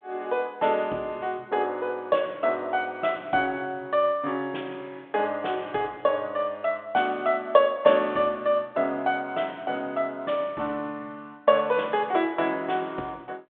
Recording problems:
phone line; 260 Hz to 3.5 kHz, G.726

